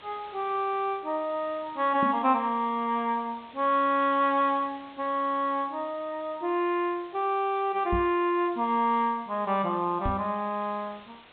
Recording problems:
treble cut off; nothing above 4 kHz
hiss; SNR 24 dB
microphone bump; at 2 s, at 8 s and at 10 s; peak 0 dB vs average level

